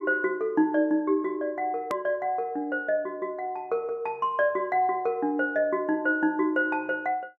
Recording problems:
click at an edit; at 2 s

